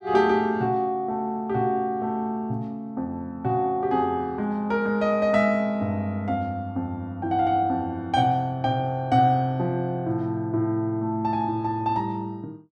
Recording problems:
none

